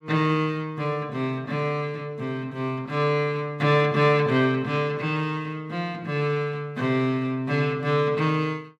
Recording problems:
none

